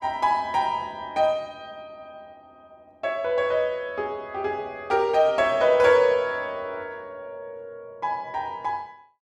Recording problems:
none

